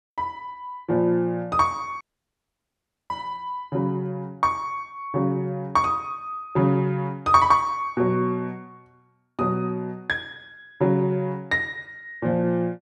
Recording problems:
dropout; at 2 s for 1 s

